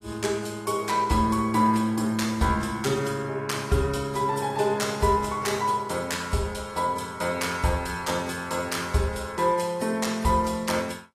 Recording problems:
codec artefacts; AAC, log-spectral distance 3 dB, nothing above 15.5 kHz

